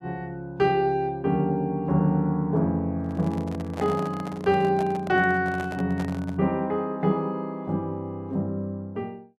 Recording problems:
microphone handling noise; from 3 to 6.5 s; peak -4 dB vs average level

